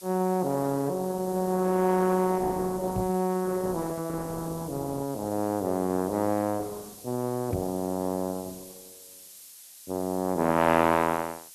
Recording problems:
codec artefacts; Opus, log-spectral distance 2 dB
hiss; slope +4 dB per octave, SNR 17 dB
microphone thump; at 3 s and at 7.5 s; peak 0 dB vs average level

